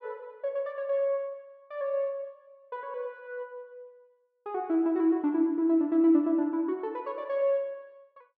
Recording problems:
none

